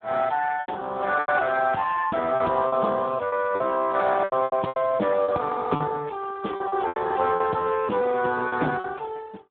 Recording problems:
telephone audio; 170 Hz to 2.6 kHz, Speex
packet loss; 10% of the sound replaced, filled with repeated pitch periods

